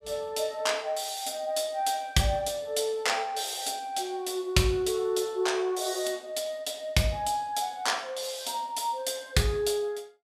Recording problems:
none

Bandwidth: 14.5 kHz